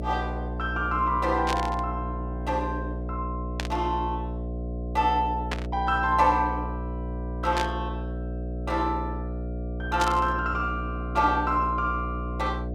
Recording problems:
mains hum; 60 Hz, harmonics up to 720 Hz, SNR 5 dB
static burst; 5 times, first at 1.5 s; peak +1 dB vs average level

